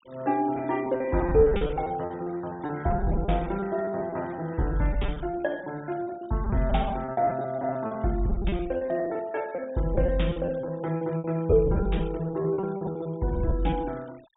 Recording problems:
treble cut off; nothing above 4 kHz
noise reduction artefacts; signal-to-artefact ratio 25 dB
lost packets; 18% of the sound replaced, filled with repeated pitch periods

